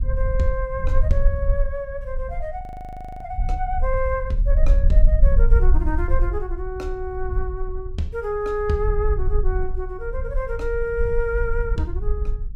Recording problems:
rumble; below 48 Hz, SNR -3 dB
frozen audio; at 2.5 s for 0.5 s

